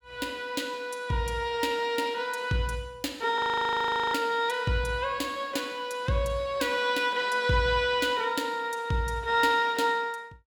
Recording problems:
frozen audio; at 3.5 s for 1 s

